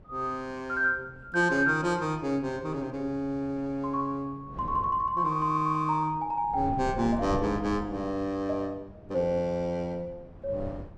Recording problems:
wind noise; below 310 Hz, SNR 16 dB

